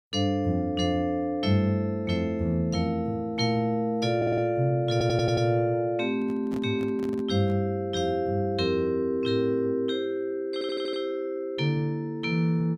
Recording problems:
audio stuttering; at 4 s, at 5 s and at 11 s
microphone handling noise; from 6 to 7.5 s; peak -7 dB vs average level

